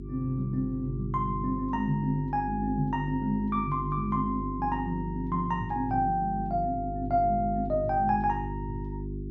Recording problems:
hum; 50 Hz, harmonics up to 400 Hz, SNR 8 dB

